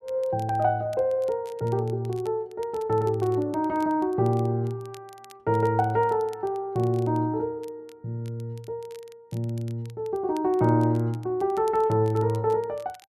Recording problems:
crackling; vinyl, SNR 28 dB

